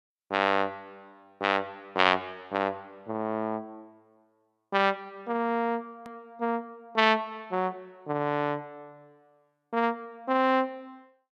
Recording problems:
hard cut with a click; at 6 s

